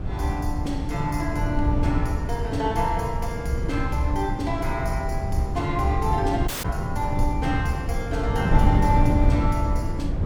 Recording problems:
wind noise; below 120 Hz, SNR 0 dB
dropout; at 6.5 s

